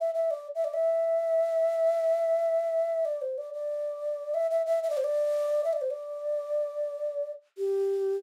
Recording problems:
none

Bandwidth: 16 kHz